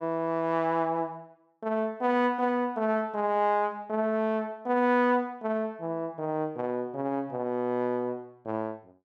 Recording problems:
none

